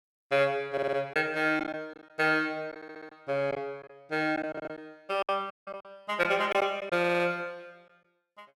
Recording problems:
packet loss; 7% of the sound replaced, filled with silence
audio stuttering; 4 times, first at 0.5 s
dropout; at 5.5 s

